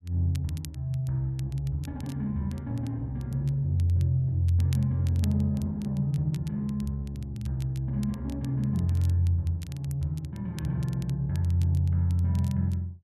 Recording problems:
crackling; vinyl, SNR 24 dB

